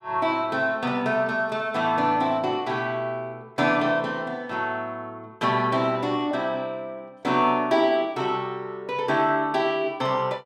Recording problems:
none

